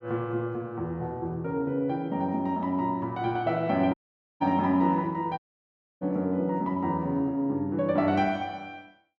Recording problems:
dropout; at 4 s and at 5.5 s for 0.5 s

